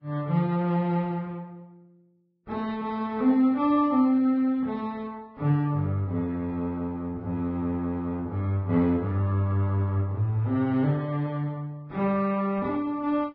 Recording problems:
lossy compression; AAC, then Vorbis, log-spectral distance 2 dB, nothing above 11.3 kHz

